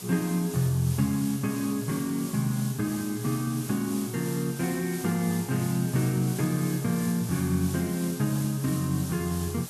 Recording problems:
background hiss; SNR 11 dB

